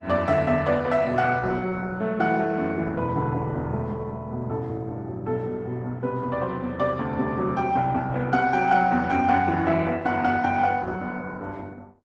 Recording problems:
lossy compression; Opus, log-spectral distance 3 dB

